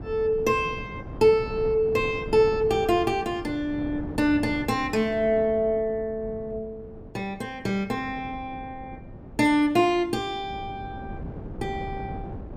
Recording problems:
wind on the microphone; below 320 Hz, SNR 14 dB

